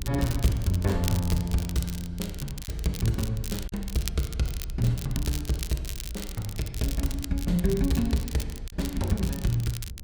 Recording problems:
low-frequency rumble; below 70 Hz, strongest tone 30 Hz, SNR 10 dB
crackling; vinyl, SNR 11 dB
lost packets; 1.2% of the sound replaced, filled with silence

